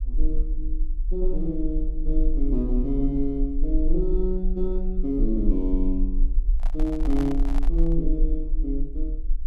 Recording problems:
low-frequency rumble; below 38 Hz, strongest tone 22 Hz, SNR 0 dB
handling noise; from 6.5 to 8 s; peak -5 dB vs average level

